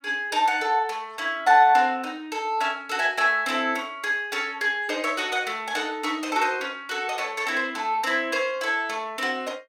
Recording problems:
none

